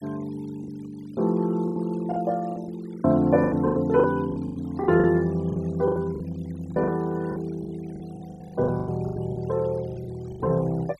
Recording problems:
noise reduction artefacts; signal-to-artefact ratio 25 dB
lost packets; 15% of the sound replaced, filled with the last packet

